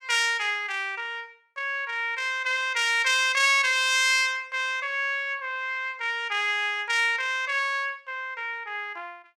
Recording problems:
none

